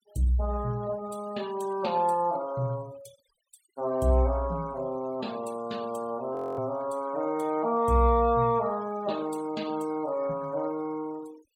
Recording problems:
noise reduction artefacts; signal-to-artefact ratio 22 dB
frozen audio; at 6.5 s

